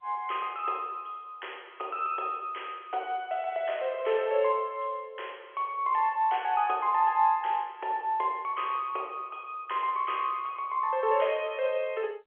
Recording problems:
telephone audio; 340 Hz to 3.3 kHz, G.711

